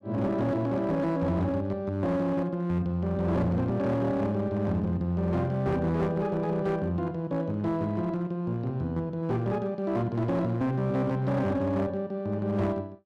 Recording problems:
distorted audio; hard clipping, signal-to-distortion ratio 12 dB

